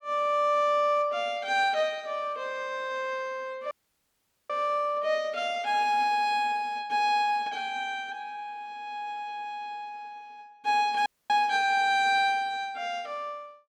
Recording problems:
audio cutting out; at 3.5 s for 1 s and at 11 s

